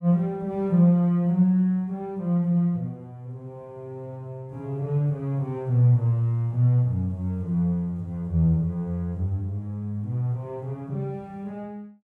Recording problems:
none

